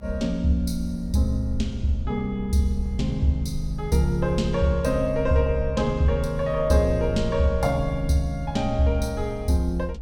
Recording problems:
rumble; below 68 Hz, SNR 10 dB

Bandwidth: 17 kHz